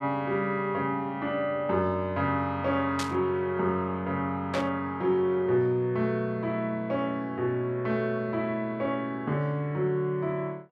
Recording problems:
static burst; at 3 s and at 4.5 s; peak -1 dB vs average level

